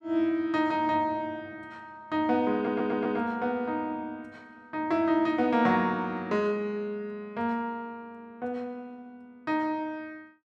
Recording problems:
stutter; at 2.5 s

